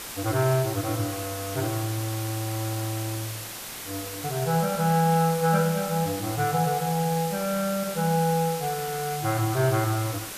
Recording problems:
hiss; slope -1 dB per octave, SNR 8 dB

